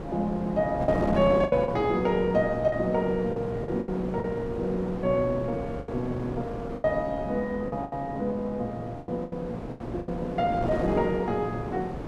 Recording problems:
wind on the microphone; below 560 Hz, SNR 7 dB
packet loss; 8% of the sound replaced, filled with the last packet

